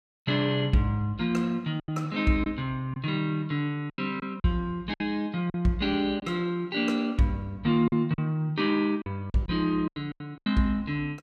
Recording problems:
packet loss; 7% of the sound replaced, filled with silence

